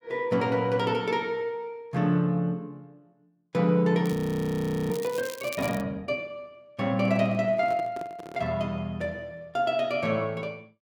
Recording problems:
crackling; from 4 to 6 s; loose cable, SNR 16 dB
frozen audio; at 4 s for 1 s
microphone handling noise; from 7 to 8.5 s; peak -9 dB vs average level

